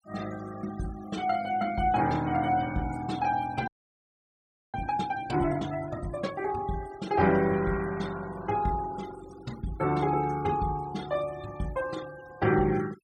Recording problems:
denoising artefacts; signal-to-artefact ratio 18 dB
frozen audio; at 3.5 s for 1 s

